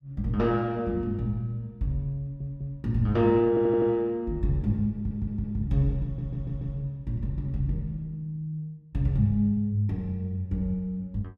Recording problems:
audio stuttering; 4 times, first at 2 s

